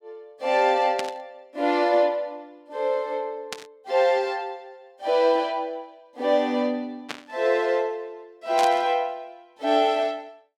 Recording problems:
burst of static; 4 times, first at 1 s; peak -3 dB vs average level

